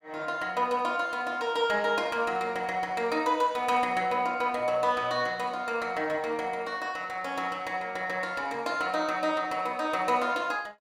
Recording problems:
none

